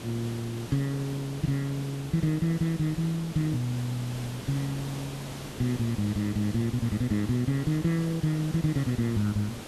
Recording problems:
hiss; slope -4 dB per octave, SNR 11 dB

